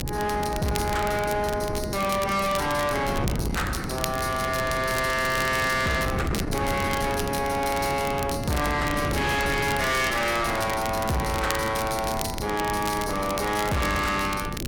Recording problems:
distortion; soft clipping, signal-to-distortion ratio 7 dB
wind noise; below 410 Hz, SNR 7 dB
crackle; vinyl, SNR 12 dB

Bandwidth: 17 kHz